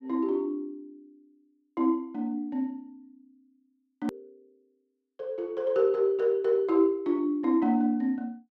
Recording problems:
edit click; at 4 s

